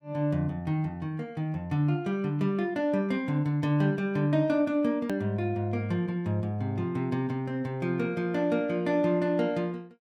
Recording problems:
click at an edit; at 5 s

